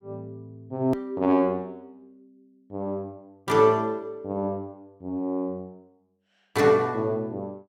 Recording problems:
click at an edit; at 1 s

